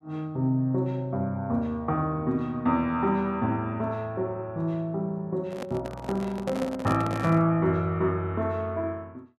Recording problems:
microphone handling noise; from 5.5 to 7.5 s; peak 0 dB vs average level

